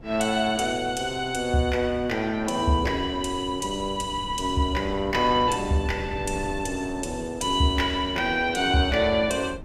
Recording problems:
wind on the microphone; below 240 Hz, SNR 16 dB

